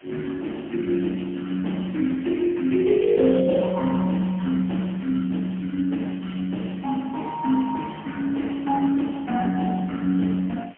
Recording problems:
phone line; 150 Hz to 3.3 kHz, AMR-NB, then MP3
background hiss; SNR 27 dB

